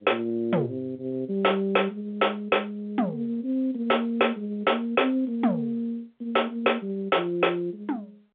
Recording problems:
telephone audio; 170 Hz to 3.5 kHz, G.711
distorted audio; soft clipping, signal-to-distortion ratio 7 dB

